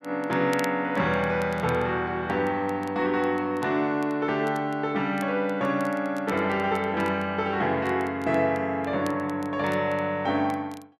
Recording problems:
crackling; vinyl, SNR 24 dB

